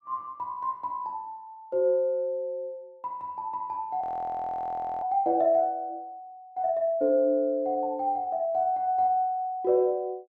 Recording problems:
audio freezing; at 4 s for 1 s

